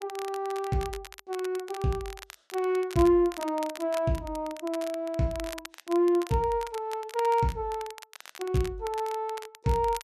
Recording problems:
crackling; vinyl, SNR 16 dB

